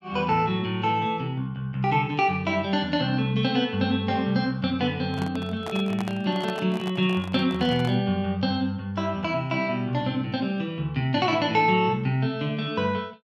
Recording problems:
handling noise; from 5 to 8 s; peak -5 dB vs average level

